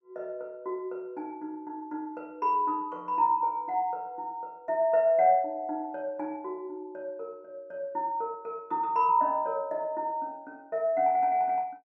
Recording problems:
none

